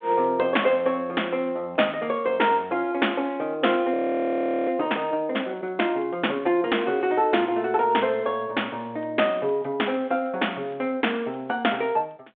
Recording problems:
phone line; 300 Hz to 3.5 kHz, G.726
audio freezing; at 4 s for 0.5 s

